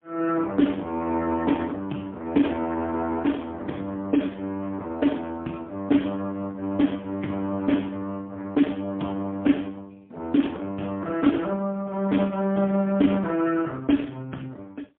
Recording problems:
phone line; 190 Hz to 3.4 kHz, AMR-NB, then MP3

